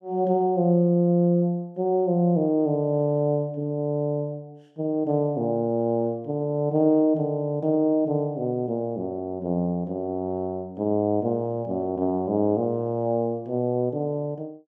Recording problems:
none

